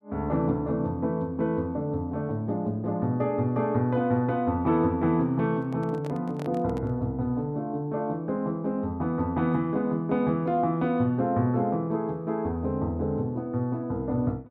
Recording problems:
microphone handling noise; from 5.5 to 7 s; peak -9 dB vs average level

